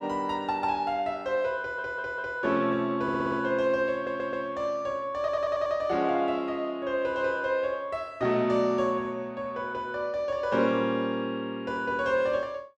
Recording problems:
stutter; 4 times, first at 1.5 s

